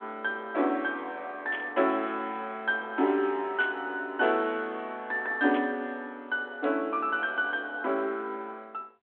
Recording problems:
telephone audio; 240 Hz to 3.5 kHz, G.726
static burst; at 1.5 s, at 3.5 s and at 5.5 s; peak -6 dB vs average level

